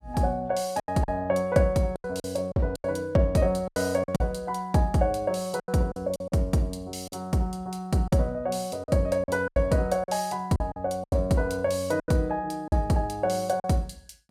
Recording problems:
packet loss; 9% of the sound replaced, filled with silence

